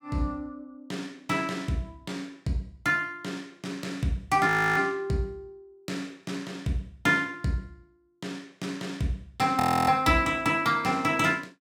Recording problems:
audio freezing; at 4.5 s and at 9.5 s

